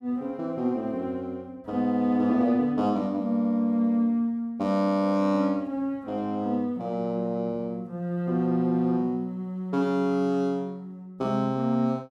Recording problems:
none

